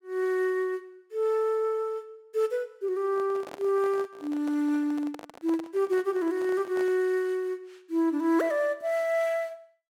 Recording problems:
handling noise; from 3 to 7 s; peak -10 dB vs average level

